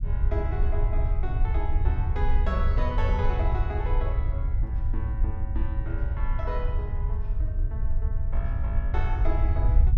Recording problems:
rumble; below 70 Hz, SNR -8 dB

